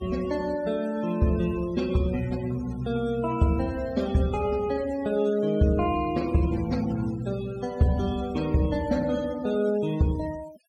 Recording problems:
noise reduction artefacts; signal-to-artefact ratio 19 dB

